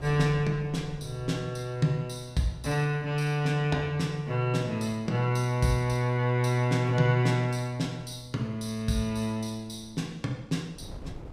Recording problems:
wind on the microphone; below 230 Hz, SNR 22 dB

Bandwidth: 15.5 kHz